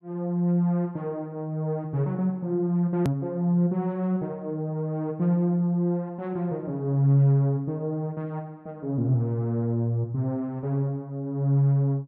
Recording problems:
click at an edit; at 3 s

